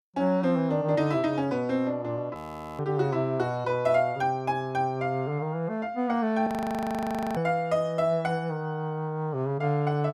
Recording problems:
audio freezing; at 2.5 s and at 6.5 s for 1 s

